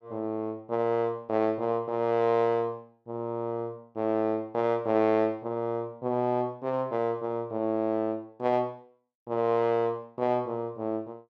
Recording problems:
none

